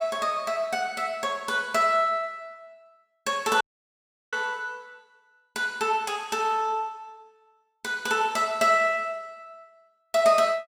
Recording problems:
dropout; at 3.5 s for 0.5 s

